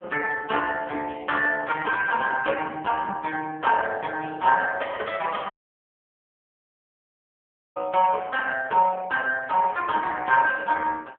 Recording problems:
phone line; 320 Hz to 3.4 kHz, AMR-NB
audio cutting out; at 5.5 s for 2.5 s

